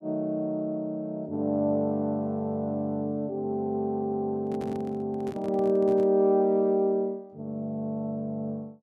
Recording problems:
handling noise; from 4.5 to 6 s; peak -7 dB vs average level

